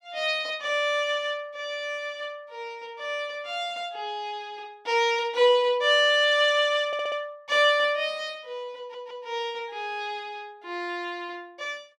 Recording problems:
stutter; at 7 s and at 9 s

